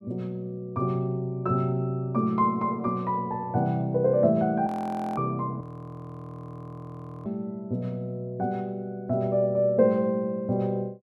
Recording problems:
frozen audio; at 4.5 s for 0.5 s and at 5.5 s for 1.5 s

